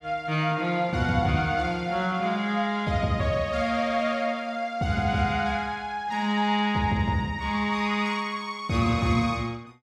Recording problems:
none

